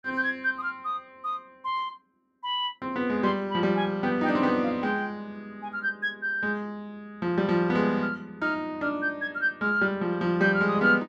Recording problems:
none

